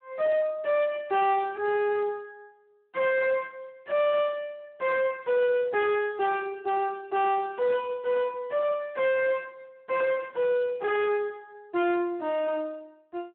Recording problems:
phone line; 260 Hz to 3.5 kHz, Speex
distortion; soft clipping, signal-to-distortion ratio 10 dB

